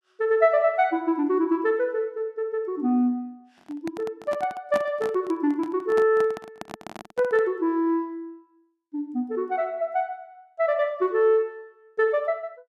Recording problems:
handling noise; from 3.5 to 7.5 s; peak -4 dB vs average level

